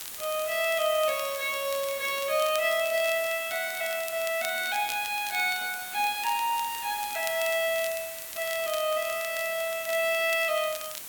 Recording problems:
hiss; slope +1 dB per octave, SNR 9 dB
crackle; vinyl, SNR 15 dB

